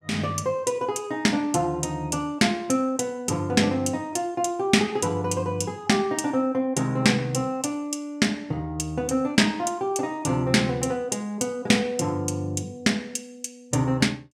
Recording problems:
none

